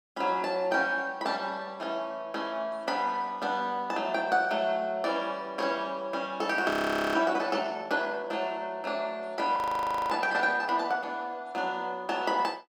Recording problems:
frozen audio; at 6.5 s and at 9.5 s for 0.5 s

